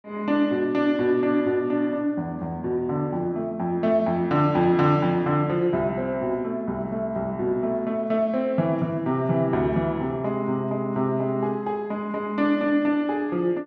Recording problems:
none

